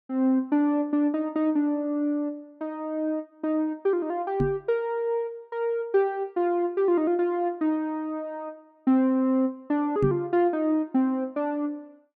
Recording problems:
knock on the microphone; at 4.5 s and at 10 s; peak +4 dB vs average level

